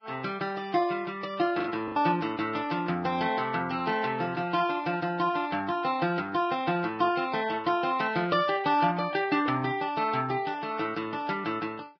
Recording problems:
lossy codec; Vorbis, log-spectral distance 3 dB, nothing above 5 kHz
packet loss; 1.3% of the sound replaced, filled with the last packet

